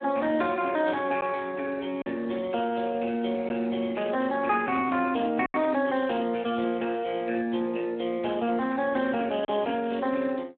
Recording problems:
phone line; 190 Hz to 3.5 kHz, Speex
lost packets; 1.6% of the sound replaced, filled with silence

